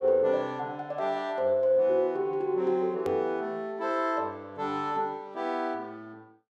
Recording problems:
edit click; at 3 s

